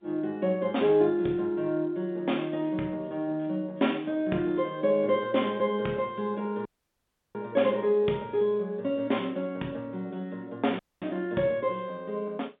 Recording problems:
phone line; 220 Hz to 3.7 kHz, G.711
dropout; at 6.5 s for 0.5 s and at 11 s

